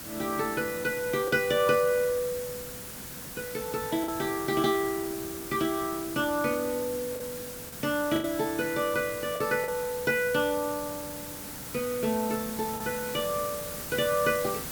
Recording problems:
hiss; slope -2 dB per octave, SNR 8 dB
packet loss; 3% of the sound replaced, filled with the last packet

